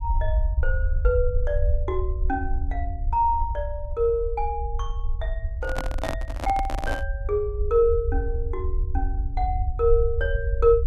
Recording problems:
low-frequency rumble; below 66 Hz, SNR 2 dB
handling noise; from 5.5 to 7 s; peak +1 dB vs average level

